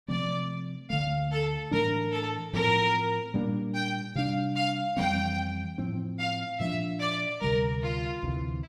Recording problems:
none

